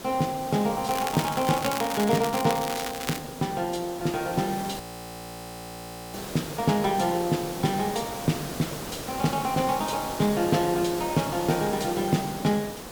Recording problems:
hiss; slope -5 dB per octave, SNR 9 dB
crackling; from 1 to 3 s; loose cable, SNR 7 dB
audio freezing; at 5 s for 1.5 s

